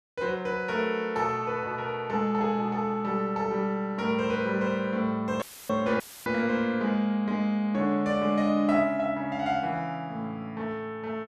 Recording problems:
audio cutting out; at 5.5 s and at 6 s; filled with static

